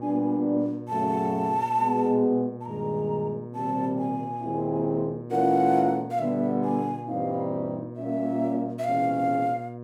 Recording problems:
hum; 60 Hz, harmonics up to 1.2 kHz, SNR 13 dB

